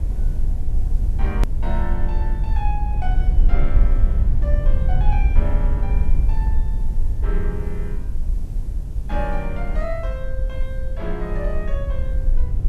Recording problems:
background hiss; SNR 25 dB
low-frequency rumble; below 56 Hz, SNR -9 dB
hard cut with a click; at 1.5 s

